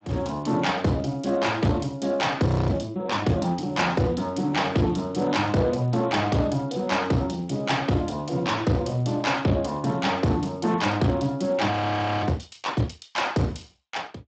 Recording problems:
lossy compression; Speex, log-spectral distance 6 dB, nothing above 7.8 kHz
distorted audio; soft clipping, signal-to-distortion ratio 11 dB
frozen audio; at 2.5 s and at 12 s for 0.5 s

